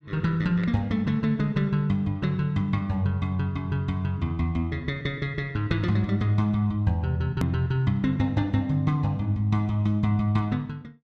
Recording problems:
click at an edit; at 7.5 s

